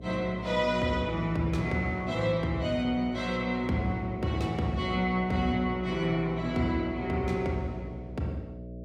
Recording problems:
electrical hum; 60 Hz, harmonics up to 660 Hz, SNR 12 dB

